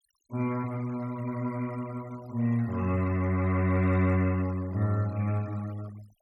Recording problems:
noise reduction artefacts; signal-to-artefact ratio 23 dB

